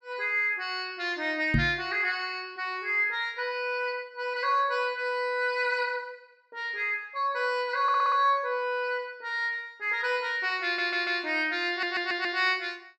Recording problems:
microphone thump; at 1.5 s; peak +5 dB vs average level
stutter; at 8 s, at 11 s and at 12 s

